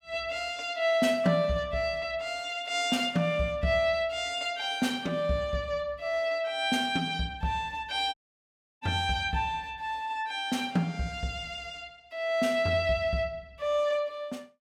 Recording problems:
audio cutting out; at 8 s for 0.5 s

